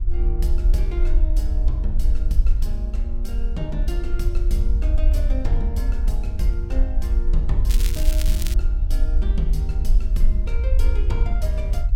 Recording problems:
low-frequency rumble; below 52 Hz, SNR -10 dB
wind noise; below 220 Hz, SNR 19 dB
crackle; at 7.5 s; loose cable, SNR 1 dB

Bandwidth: 16.5 kHz